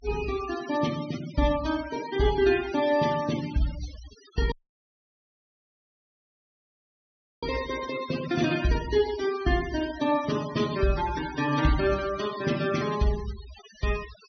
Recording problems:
treble cut off; nothing above 6.2 kHz
noise reduction artefacts; signal-to-artefact ratio 13 dB
dropout; at 4.5 s for 3 s

